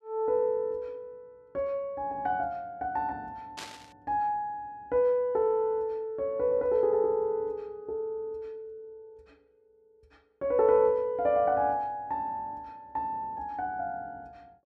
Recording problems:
static burst; at 3.5 s; peak -6 dB vs average level

